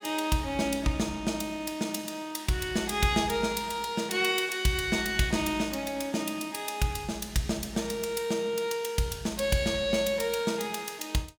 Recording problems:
none

